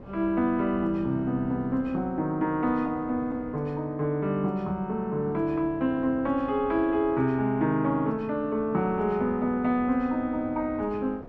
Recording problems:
wind on the microphone; below 500 Hz, SNR 18 dB

